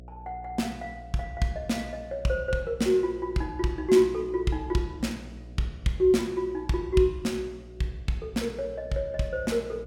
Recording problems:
hum; 60 Hz, harmonics up to 720 Hz, SNR 18 dB

